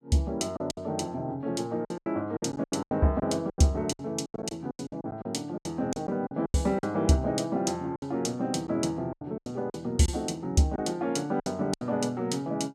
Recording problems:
lost packets; 13% of the sound replaced, filled with silence

